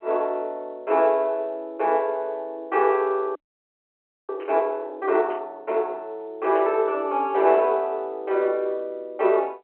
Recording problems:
phone line; 260 Hz to 3.2 kHz, G.711
audio freezing; at 3.5 s for 1 s
static burst; at 4.5 s, at 5.5 s and at 6.5 s; peak -14 dB vs average level

